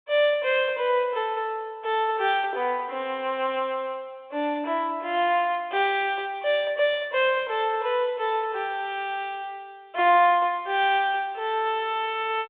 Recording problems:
phone line; 300 Hz to 3.8 kHz, G.726

